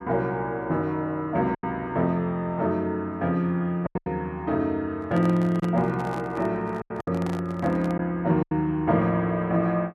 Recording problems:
packet loss; 5% of the sound replaced, filled with silence
handling noise; from 5 to 8 s; peak -7 dB vs average level

